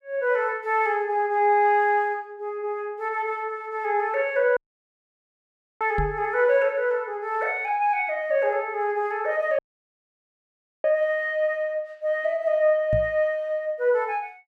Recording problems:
dropout; at 4.5 s for 1 s and at 9.5 s for 1.5 s
microphone bump; at 6 s and at 13 s; peak 0 dB vs average level

